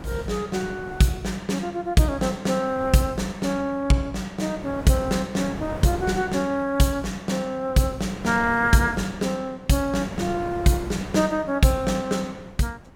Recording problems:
wind noise; below 620 Hz, SNR 15 dB

